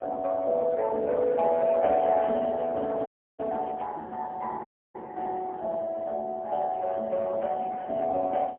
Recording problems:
telephone audio; 260 Hz to 2.2 kHz, AMR-NB, then MP3
microphone handling noise; from 2 to 4 s; peak -15 dB vs average level
dropout; at 3 s and at 4.5 s

